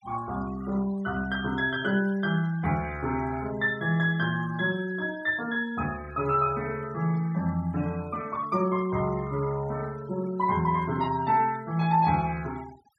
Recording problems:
denoising artefacts; signal-to-artefact ratio 20 dB

